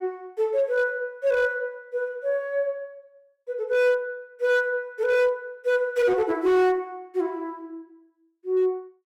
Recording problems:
distortion; hard clipping, signal-to-distortion ratio 12 dB

